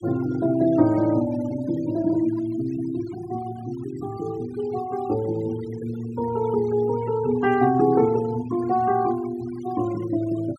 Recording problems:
noise reduction artefacts; signal-to-artefact ratio 18 dB

